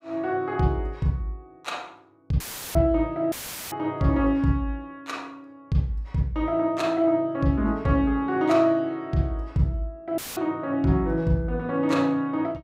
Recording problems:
audio cutting out; at 2.5 s, at 3.5 s and at 10 s; filled with static

